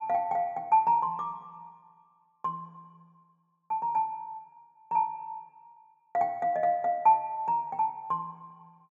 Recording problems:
none

